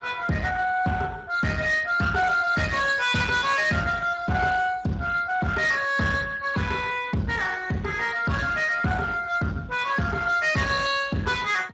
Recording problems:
lossy compression; Speex, log-spectral distance 4 dB, nothing above 7.6 kHz
distortion; soft clipping, signal-to-distortion ratio 11 dB

